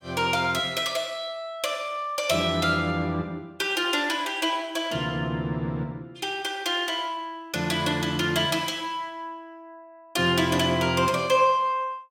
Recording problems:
none

